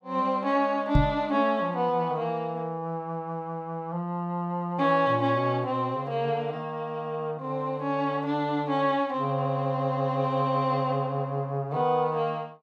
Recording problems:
microphone thump; at 1 s; peak +9 dB vs average level

